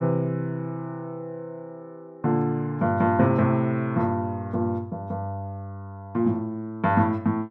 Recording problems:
none

